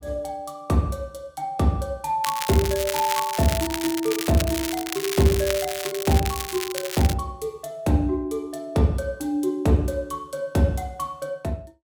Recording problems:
crackling; from 2 to 7 s; loose cable, SNR 6 dB

